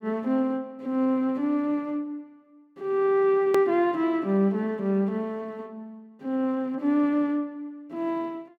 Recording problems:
click at an edit; at 3.5 s

